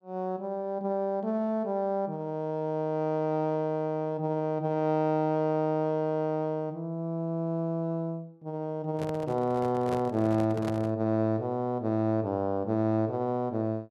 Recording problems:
microphone handling noise; from 9 to 11 s; peak -3 dB vs average level

